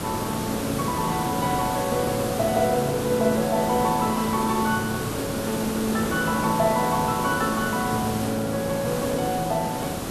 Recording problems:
background hiss; slope -5 dB per octave, SNR 5 dB

